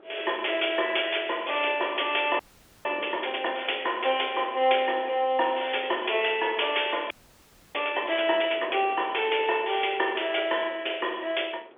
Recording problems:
telephone audio; 300 Hz to 3.4 kHz, G.711
wind noise; below 770 Hz, SNR 22 dB
audio freezing; at 2.5 s and at 7 s for 0.5 s

